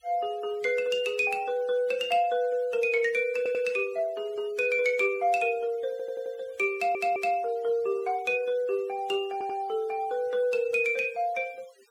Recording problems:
noise reduction artefacts; signal-to-artefact ratio 26 dB
audio stuttering; 4 times, first at 3.5 s

